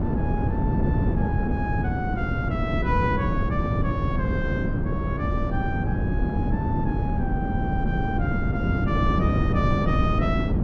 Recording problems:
wind on the microphone; below 240 Hz, SNR -6 dB

